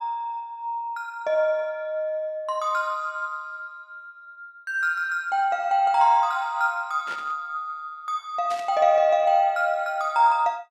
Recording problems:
static burst; at 7 s and at 8.5 s; peak -10 dB vs average level

